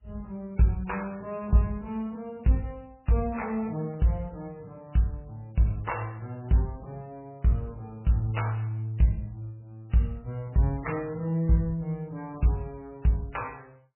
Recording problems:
codec artefacts; MP3, log-spectral distance 3 dB, nothing above 2.7 kHz

